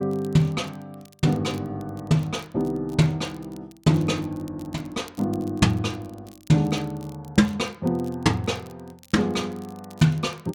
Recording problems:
crackle; vinyl, SNR 28 dB

